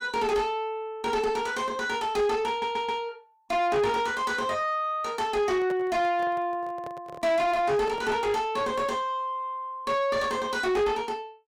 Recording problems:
distortion; soft clipping, signal-to-distortion ratio 7 dB
audio stuttering; at 2.5 s
microphone handling noise; from 5.5 to 8.5 s; peak -7 dB vs average level

